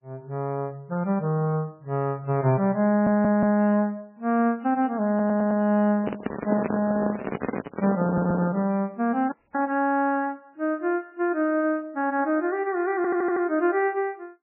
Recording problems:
lossy compression; MP3, log-spectral distance 2 dB
audio stuttering; 4 times, first at 3 s
microphone handling noise; from 6 to 8.5 s; peak +1 dB vs average level
audio cutting out; at 9.5 s

